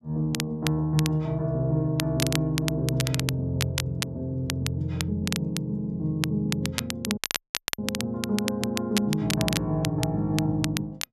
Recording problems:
crackling; vinyl, SNR 5 dB
dropout; at 7 s for 0.5 s

